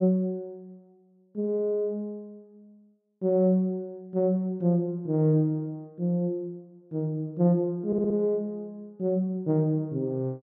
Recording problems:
audio stuttering; at 8 s

